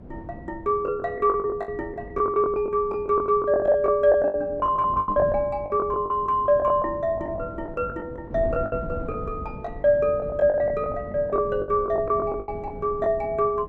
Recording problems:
wind on the microphone; below 280 Hz, SNR 15 dB
lost packets; 15% of the sound replaced, filled with the last packet

